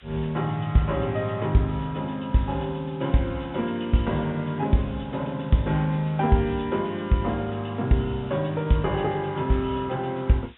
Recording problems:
low-pass filter; nothing above 3.8 kHz
background hiss; SNR 27 dB

